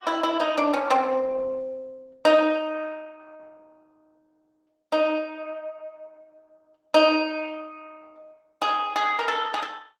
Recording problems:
lossy codec; Opus, log-spectral distance 3 dB, nothing above 17.7 kHz

